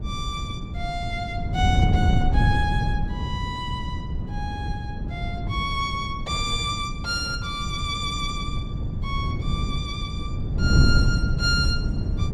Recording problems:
wind on the microphone; below 150 Hz, SNR -2 dB

